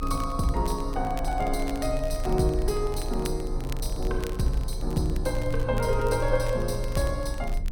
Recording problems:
rumble; below 48 Hz, strongest tone 28 Hz, SNR 6 dB
crackle; vinyl, SNR 19 dB

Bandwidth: 17 kHz